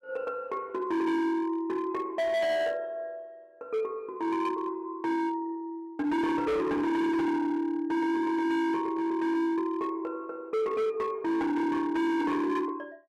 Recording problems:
distorted audio; hard clipping, signal-to-distortion ratio 8 dB

